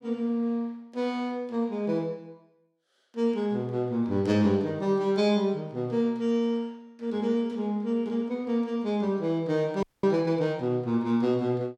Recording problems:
frozen audio; at 10 s

